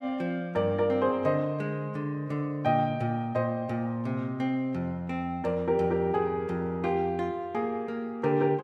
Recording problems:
none

